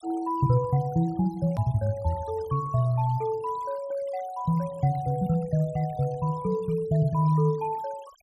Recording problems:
denoising artefacts; signal-to-artefact ratio 25 dB
edit click; at 1.5 s

